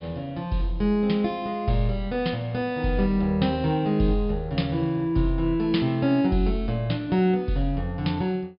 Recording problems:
low-pass filter; nothing above 5.5 kHz

